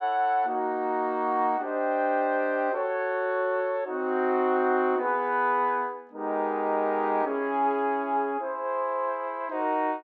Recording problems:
none

